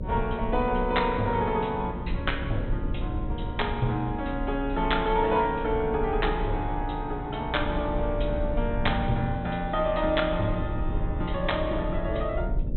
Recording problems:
treble cut off; nothing above 4 kHz
hum; 60 Hz, harmonics up to 600 Hz, SNR 13 dB
low-frequency rumble; below 80 Hz, strongest tone 34 Hz, SNR 7 dB

